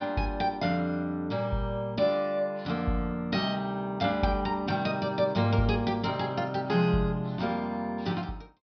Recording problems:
treble cut off; nothing above 5.5 kHz

